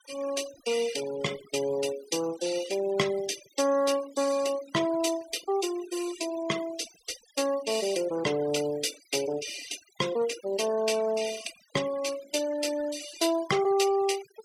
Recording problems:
noise reduction artefacts; signal-to-artefact ratio 14 dB

